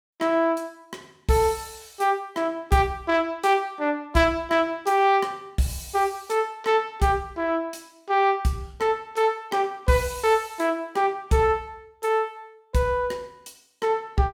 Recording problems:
none

